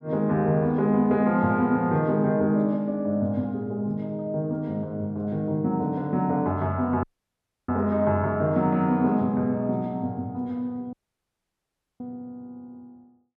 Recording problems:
audio cutting out; at 7 s for 0.5 s and at 11 s for 1 s

